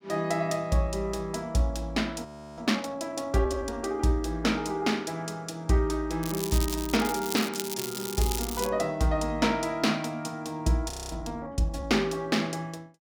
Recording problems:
audio freezing; at 2.5 s and at 11 s
crackle; from 6 to 8.5 s; loose cable, SNR 6 dB

